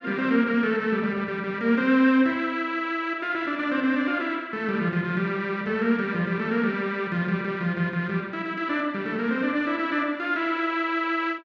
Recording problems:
none

